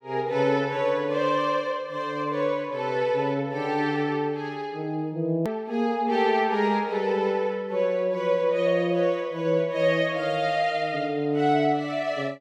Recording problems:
hard cut with a click; at 5.5 s

